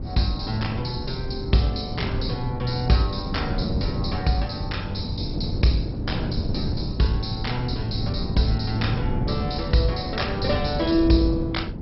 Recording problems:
codec artefacts; MP2, log-spectral distance 5 dB, nothing above 5.5 kHz
wind noise; below 230 Hz, SNR 4 dB

